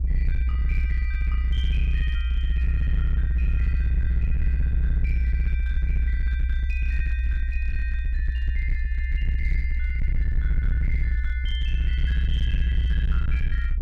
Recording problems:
distortion; hard clipping, signal-to-distortion ratio 10 dB
rumble; below 64 Hz, strongest tone 62 Hz, SNR -13 dB

